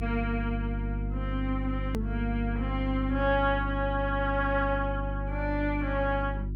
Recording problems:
hum; 50 Hz, harmonics up to 350 Hz, SNR 3 dB
edit click; at 2 s

